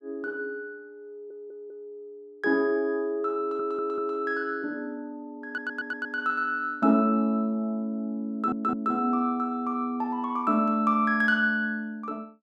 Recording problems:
stutter; 4 times, first at 1 s

